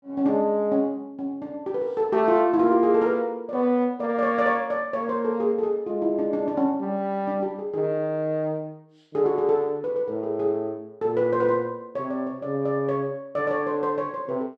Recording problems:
none

